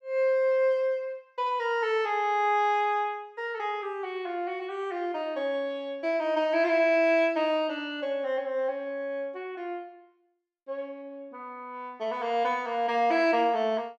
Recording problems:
none

